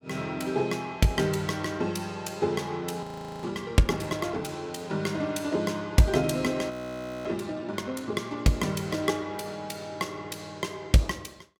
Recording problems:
frozen audio; at 3 s and at 6.5 s for 0.5 s

